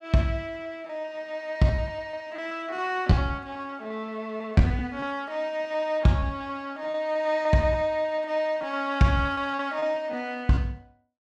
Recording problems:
packet loss; 12% of the sound replaced, filled with repeated pitch periods

